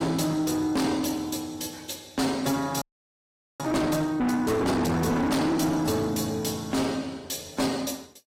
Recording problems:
lossy compression; AAC, log-spectral distance 4 dB, nothing above 14.3 kHz
distortion; soft clipping, signal-to-distortion ratio 7 dB
frozen audio; at 3 s for 1 s

